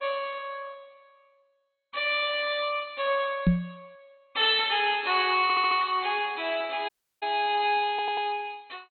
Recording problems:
lossy compression; MP2, log-spectral distance 5 dB, nothing above 3.6 kHz
microphone bump; at 3.5 s; peak +8 dB vs average level
stutter; at 5.5 s and at 8 s
dropout; at 7 s

